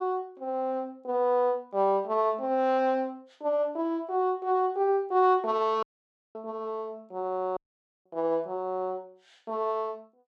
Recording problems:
dropout; at 6 s for 0.5 s and at 7.5 s

